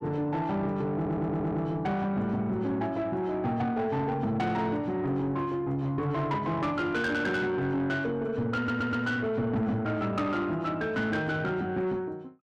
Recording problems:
distorted audio; soft clipping, signal-to-distortion ratio 11 dB
audio stuttering; at 1 s and at 8.5 s

